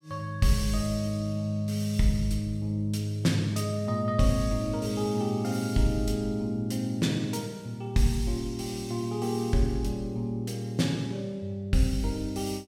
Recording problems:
none

